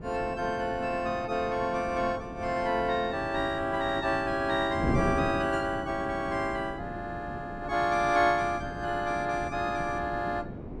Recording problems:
wind on the microphone; below 350 Hz, SNR 9 dB

